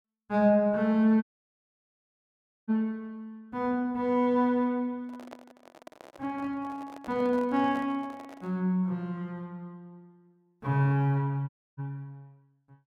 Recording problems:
dropout; at 1 s for 1.5 s and at 11 s
microphone handling noise; from 5 to 8.5 s; peak -12 dB vs average level

